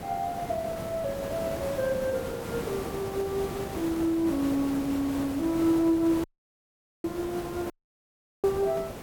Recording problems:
hiss; slope -7 dB per octave, SNR 8 dB
dropout; at 6 s for 1 s and at 7.5 s for 0.5 s

